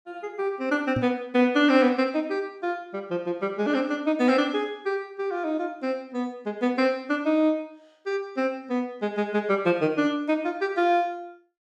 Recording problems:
knock on the microphone; at 1 s; peak +2 dB vs average level

